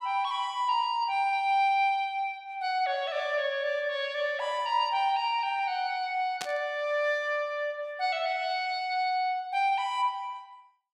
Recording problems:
burst of static; at 6.5 s; peak -2 dB vs average level

